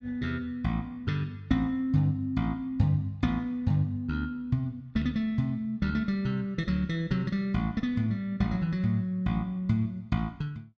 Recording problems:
none

